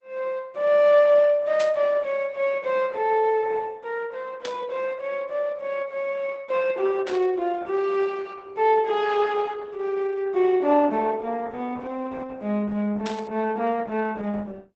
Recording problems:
lossy codec; Opus, log-spectral distance 2 dB, nothing above 7.3 kHz
static burst; 4 times, first at 1.5 s; peak -7 dB vs average level

